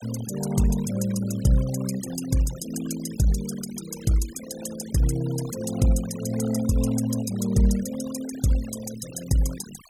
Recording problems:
noise reduction artefacts; signal-to-artefact ratio 16 dB

